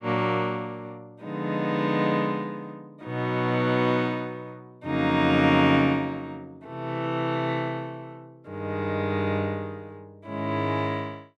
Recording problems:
none

